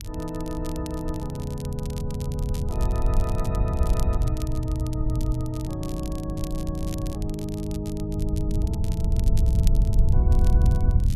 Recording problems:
wind on the microphone; below 86 Hz, SNR -5 dB
crackle; vinyl, SNR 13 dB

